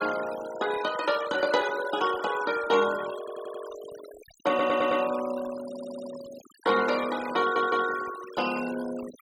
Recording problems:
noise reduction artefacts; signal-to-artefact ratio 13 dB
audio stuttering; 4 times, first at 3 s

